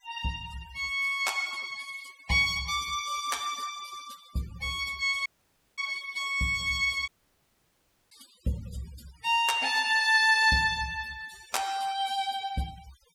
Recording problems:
noise reduction artefacts; signal-to-artefact ratio 20 dB
audio cutting out; at 5.5 s for 0.5 s and at 7 s for 1 s

